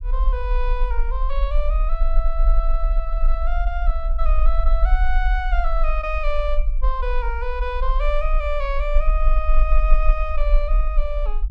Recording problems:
rumble; below 42 Hz, strongest tone 22 Hz, SNR -5 dB

